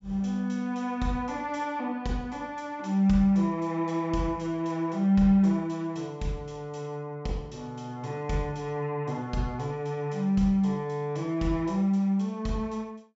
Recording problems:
treble missing; nothing above 8 kHz

